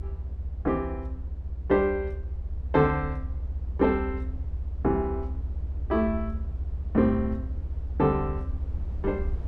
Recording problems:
rumble; below 76 Hz, strongest tone 60 Hz, SNR 6 dB

